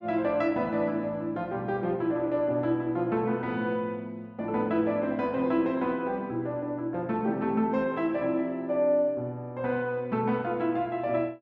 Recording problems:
none

